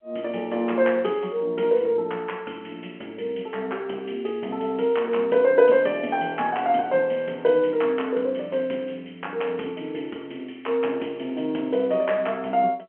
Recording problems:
telephone audio; 190 Hz to 3.2 kHz, G.711

